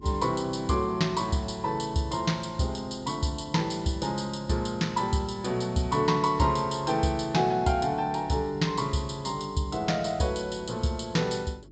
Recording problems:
treble cut off; nothing above 8 kHz
hum; 50 Hz, harmonics up to 400 Hz, SNR 23 dB

